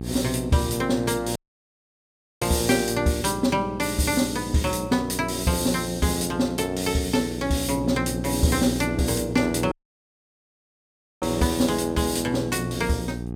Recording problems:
hum; 60 Hz, harmonics up to 840 Hz, SNR 10 dB
audio cutting out; at 1.5 s for 1 s and at 9.5 s for 1.5 s

